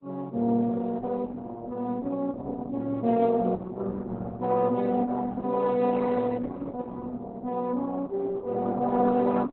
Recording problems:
lossy compression; Opus, then Opus, log-spectral distance 3 dB, nothing above 4.1 kHz

